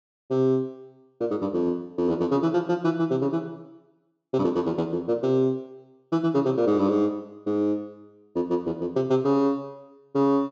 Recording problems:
low-pass filter; nothing above 8 kHz

